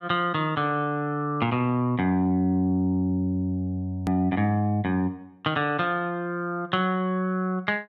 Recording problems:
hard cut with a click; at 4 s

